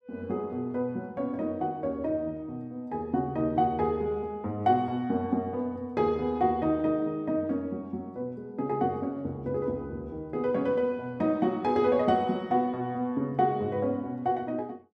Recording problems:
none

